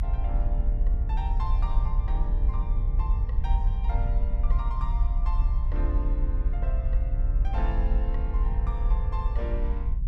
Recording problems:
electrical hum; 60 Hz, harmonics up to 300 Hz, SNR 15 dB
rumble; below 54 Hz, strongest tone 34 Hz, SNR -11 dB

